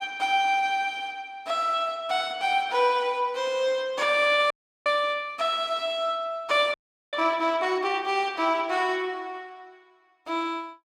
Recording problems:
audio freezing; at 4.5 s and at 6.5 s

